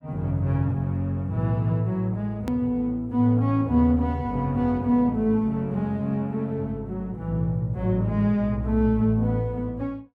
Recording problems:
click at an edit; at 2.5 s

